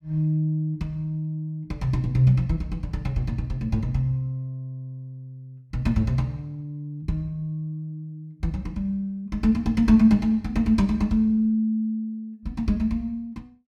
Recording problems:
none

